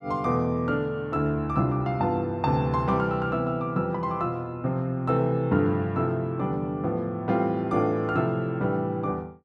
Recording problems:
none

